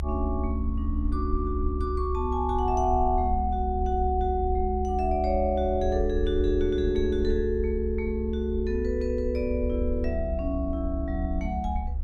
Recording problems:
rumble; below 70 Hz, strongest tone 68 Hz, SNR 4 dB

